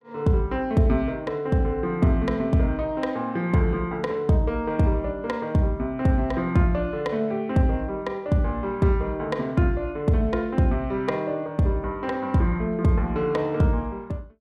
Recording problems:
none

